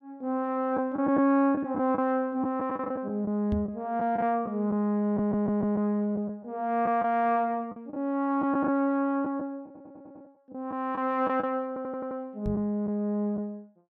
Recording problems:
lost packets; 6% of the sound replaced, filled with the last packet
knock on the microphone; at 3.5 s and at 12 s; peak 0 dB vs average level
audio stuttering; at 5 s, at 9.5 s and at 12 s

